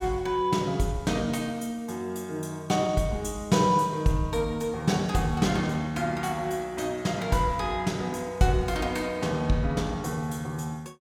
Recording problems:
none

